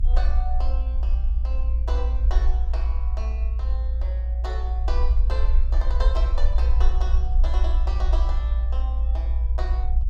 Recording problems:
rumble; below 58 Hz, SNR -13 dB

